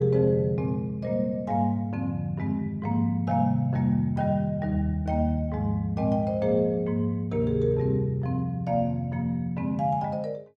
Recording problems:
none

